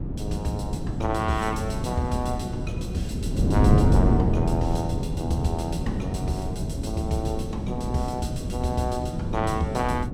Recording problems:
wind noise; below 220 Hz, SNR -2 dB

